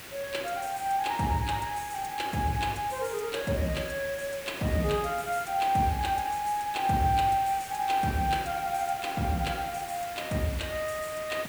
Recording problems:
background hiss; SNR 12 dB

